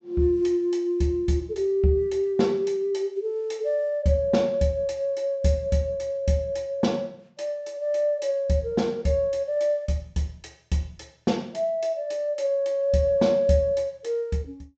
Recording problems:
treble missing; nothing above 8 kHz

